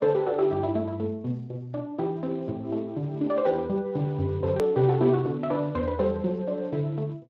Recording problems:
codec artefacts; Speex, log-spectral distance 2 dB, nothing above 13.1 kHz
edit click; at 4.5 s

